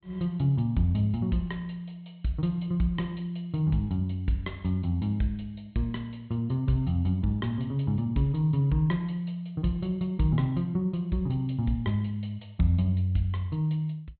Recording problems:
treble missing; nothing above 4.1 kHz

